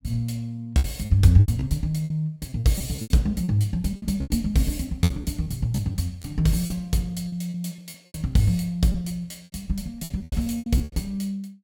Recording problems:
packet loss; 14% of the sound replaced, filled with repeated pitch periods

